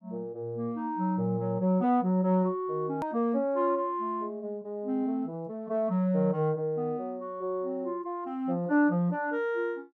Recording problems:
hard cut with a click; at 3 s

